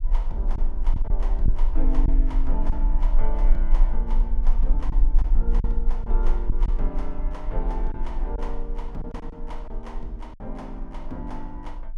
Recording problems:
rumble; below 36 Hz, strongest tone 20 Hz, SNR -10 dB
packet loss; 4% of the sound replaced, filled with silence

